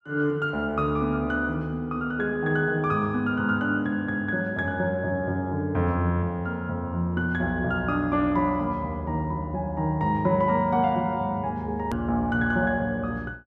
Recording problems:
edit click; at 12 s

